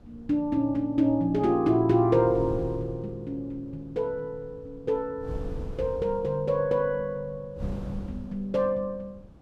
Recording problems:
wind on the microphone; below 170 Hz, SNR 16 dB

